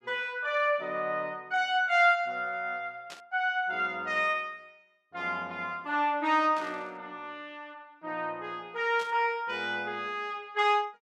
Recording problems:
burst of static; at 3 s, at 6.5 s and at 9 s; peak -11 dB vs average level

